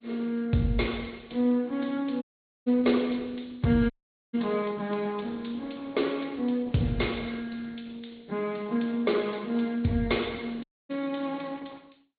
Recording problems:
treble missing; nothing above 4.2 kHz
codec artefacts; Opus, log-spectral distance 4 dB
dropout; at 2 s, at 4 s and at 11 s

